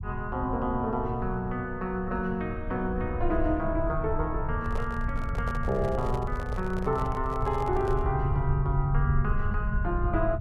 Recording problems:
low-frequency rumble; below 86 Hz, SNR 4 dB
handling noise; from 4.5 to 8 s; peak -4 dB vs average level

